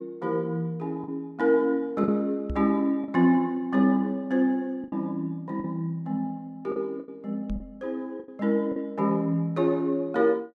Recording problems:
packet loss; 5% of the sound replaced, filled with the last packet
knock on the microphone; at 2.5 s and at 7.5 s; peak -3 dB vs average level

